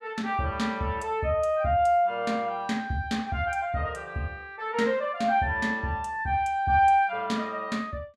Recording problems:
none

